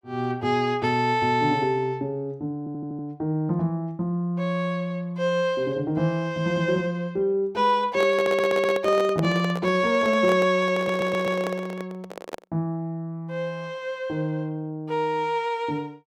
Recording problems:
audio stuttering; at 2.5 s, at 8 s and at 11 s
handling noise; from 8 to 12 s; peak -2 dB vs average level

